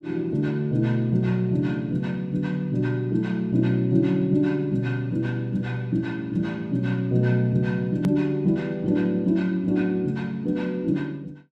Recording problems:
hard cut with a click; at 8 s

